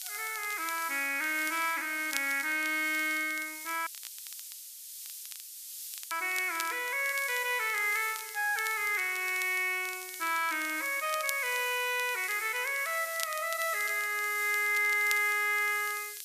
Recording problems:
background hiss; SNR 11 dB
crackling; vinyl, SNR 15 dB
audio cutting out; at 4 s for 2 s

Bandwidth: 14.5 kHz